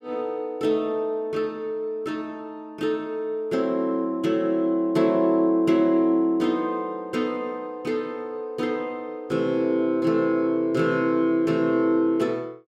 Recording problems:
none

